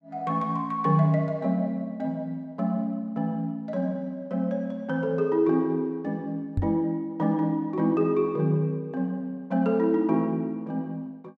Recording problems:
knock on the microphone; at 6.5 s; peak +3 dB vs average level

